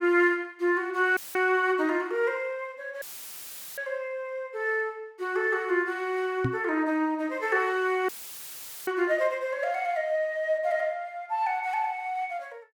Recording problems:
audio cutting out; at 1 s, at 3 s for 1 s and at 8 s for 1 s; filled with static
microphone bump; at 6.5 s; peak +3 dB vs average level

